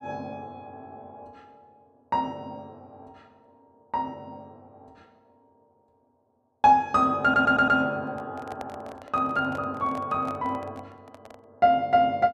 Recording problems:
stutter; at 7 s
microphone handling noise; from 8 to 11 s; peak -10 dB vs average level

